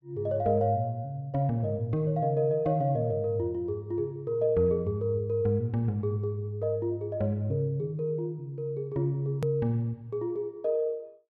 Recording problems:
click at an edit; at 9.5 s

